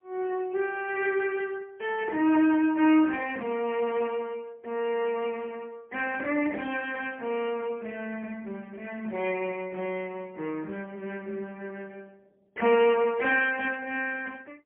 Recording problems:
phone line; 260 Hz to 3.1 kHz, AMR-NB, then MP3

